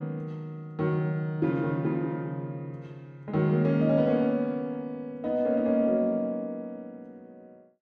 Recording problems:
none

